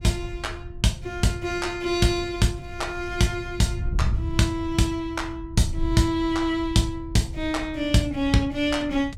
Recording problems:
wind on the microphone; below 100 Hz, SNR 10 dB

